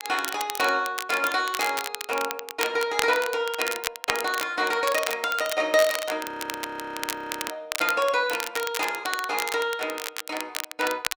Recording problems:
crackle; vinyl, SNR 6 dB
frozen audio; at 6 s for 1 s

